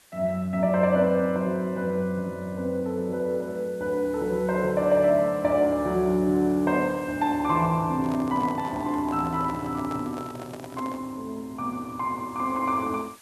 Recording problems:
hiss; slope 0 dB per octave, SNR 26 dB
microphone handling noise; from 8 to 11 s; peak -9 dB vs average level

